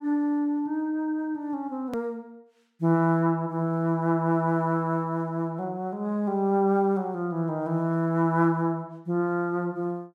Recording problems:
click at an edit; at 2 s

